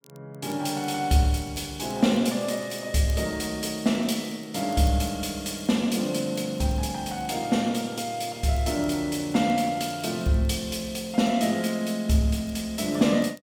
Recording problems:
crackle; vinyl, SNR 29 dB

